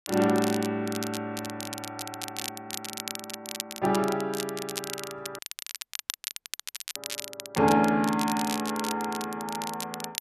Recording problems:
crackle; vinyl, SNR 8 dB
dropout; at 5.5 s for 1.5 s

